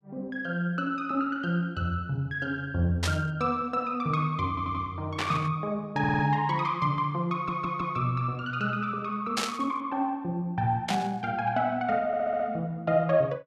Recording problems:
static burst; 4 times, first at 3 s; peak +4 dB vs average level
stutter; 4 times, first at 4.5 s

